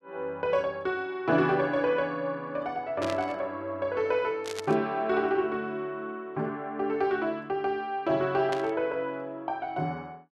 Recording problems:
static burst; at 3 s, at 4.5 s and at 8.5 s; peak -3 dB vs average level

